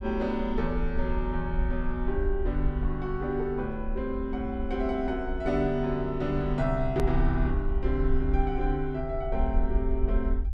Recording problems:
low-frequency rumble; below 56 Hz, SNR 3 dB
hard cut with a click; at 7 s

